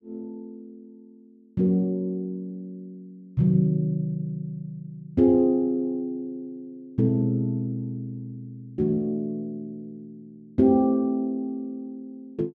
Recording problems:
none

